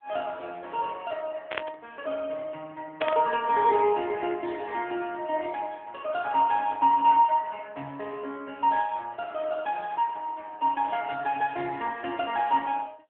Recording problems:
telephone audio; 170 Hz to 3.3 kHz, AMR-NB
static burst; at 1.5 s and at 3 s; peak -1 dB vs average level

